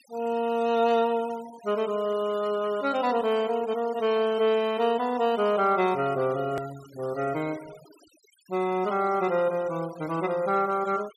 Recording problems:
noise reduction artefacts; signal-to-artefact ratio 21 dB
hard cut with a click; at 6.5 s

